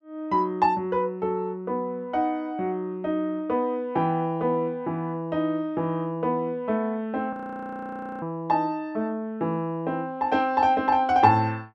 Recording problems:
frozen audio; at 7.5 s for 1 s

